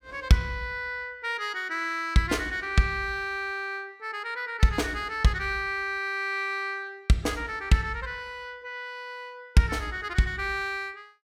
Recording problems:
none

